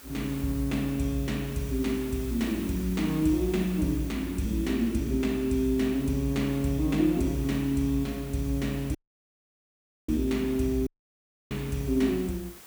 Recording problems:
hiss; slope -2 dB per octave, SNR 17 dB
audio cutting out; at 9 s for 1 s and at 11 s for 0.5 s

